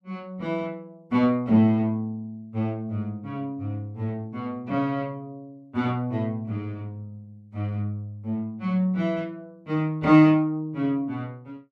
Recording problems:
none

